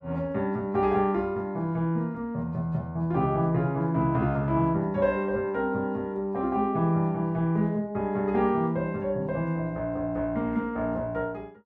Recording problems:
none

